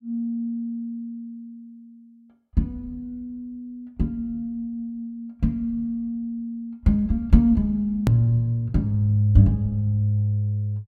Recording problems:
edit click; at 8 s

